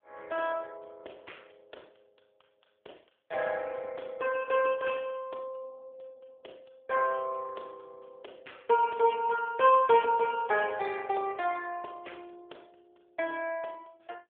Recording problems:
phone line; 340 Hz to 3.4 kHz, AMR-NB

